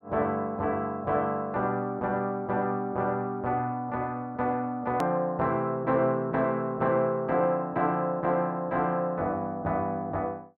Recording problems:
click at an edit; at 5 s

